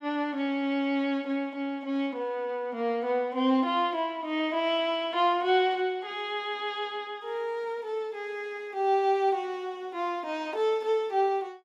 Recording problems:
none

